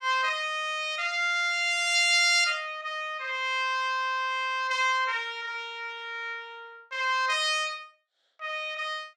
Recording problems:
none

